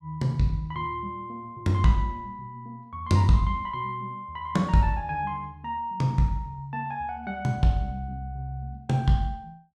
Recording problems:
none

